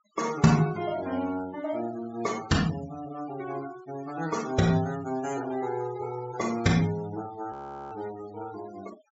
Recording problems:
treble cut off; nothing above 8 kHz
denoising artefacts; signal-to-artefact ratio 17 dB
audio freezing; at 7.5 s

